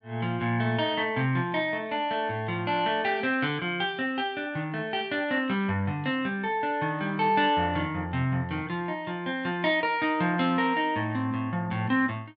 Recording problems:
none

